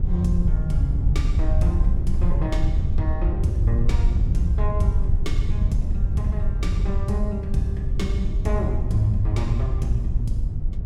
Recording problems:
wind on the microphone; below 82 Hz, SNR -4 dB

